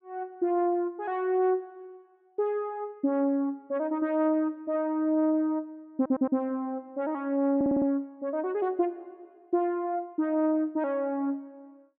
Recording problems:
audio stuttering; at 6 s and at 7.5 s

